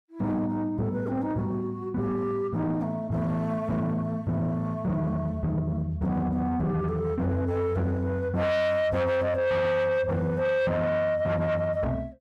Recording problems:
distorted audio; soft clipping, signal-to-distortion ratio 8 dB

